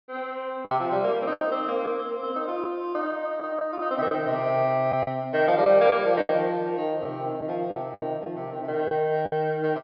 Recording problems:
low-pass filter; nothing above 5.5 kHz
packet loss; 7% of the sound replaced, filled with the last packet

